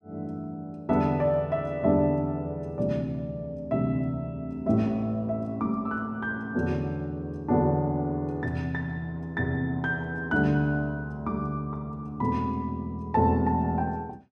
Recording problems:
none

